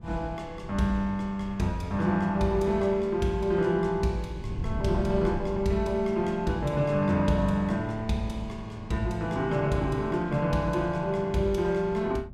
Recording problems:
wind on the microphone; below 140 Hz, SNR 14 dB

